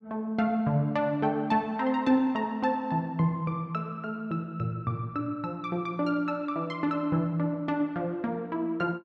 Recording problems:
none

